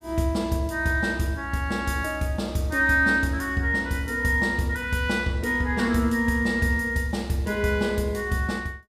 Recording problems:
none

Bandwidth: 15.5 kHz